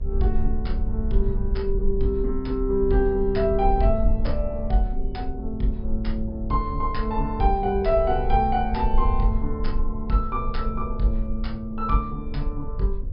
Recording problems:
low-pass filter; nothing above 5.5 kHz
hum; 50 Hz, harmonics up to 550 Hz, SNR 20 dB
low-frequency rumble; below 52 Hz, strongest tone 20 Hz, SNR 4 dB

